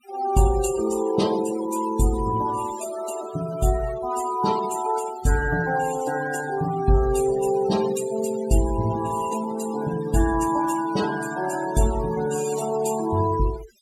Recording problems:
noise reduction artefacts; signal-to-artefact ratio 13 dB

